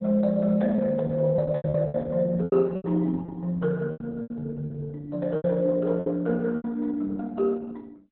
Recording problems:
codec artefacts; MP2, then Opus, log-spectral distance 2 dB, nothing above 4 kHz
packet loss; 11% of the sound replaced, filled with repeated pitch periods

